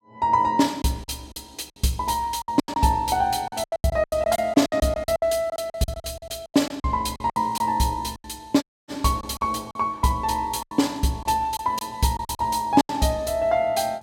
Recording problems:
lost packets; 14% of the sound replaced, filled with silence
dropout; at 8.5 s

